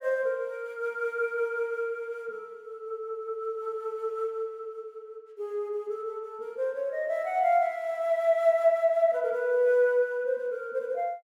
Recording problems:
none

